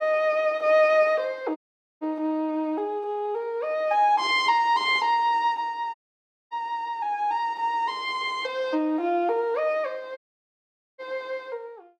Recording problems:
dropout; at 1.5 s, at 6 s for 0.5 s and at 10 s for 1 s

